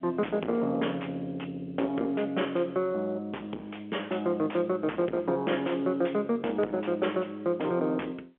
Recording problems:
phone line; 260 Hz to 3.6 kHz, G.711
distorted audio; soft clipping, signal-to-distortion ratio 9 dB

